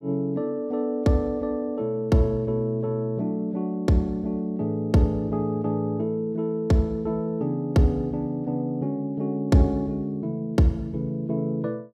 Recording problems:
none

